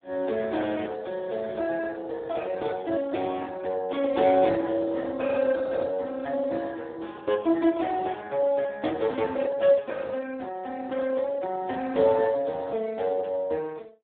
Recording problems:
phone line; 240 Hz to 2.2 kHz, Speex

